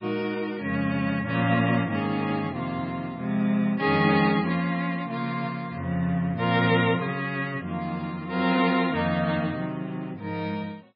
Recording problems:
lossy codec; MP3, log-spectral distance 2 dB, nothing above 4.5 kHz

